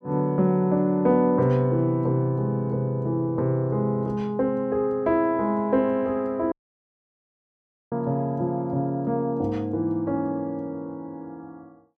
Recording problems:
audio cutting out; at 6.5 s for 1.5 s

